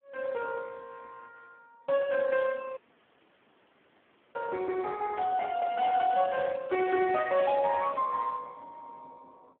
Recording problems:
telephone audio; 110 Hz to 2.8 kHz, Speex
dropout; at 3 s for 1.5 s

